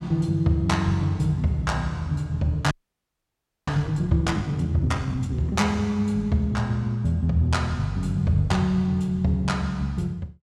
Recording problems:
frozen audio; at 2.5 s for 1 s

